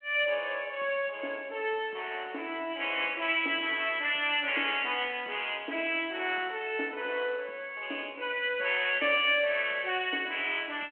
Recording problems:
phone line; 240 Hz to 3.3 kHz, G.726

